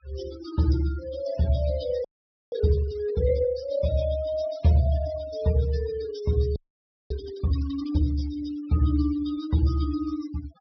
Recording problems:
treble missing; nothing above 5.5 kHz
noise reduction artefacts; signal-to-artefact ratio 18 dB
frozen audio; at 2 s and at 6.5 s for 0.5 s

